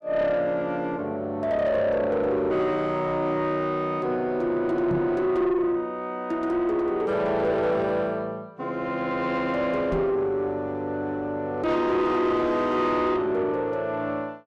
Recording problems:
distortion; soft clipping, signal-to-distortion ratio 11 dB
microphone thump; at 5 s and at 10 s; peak +1 dB vs average level

